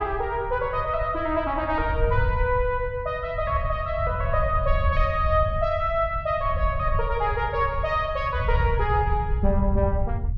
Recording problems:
rumble; below 88 Hz, SNR 4 dB

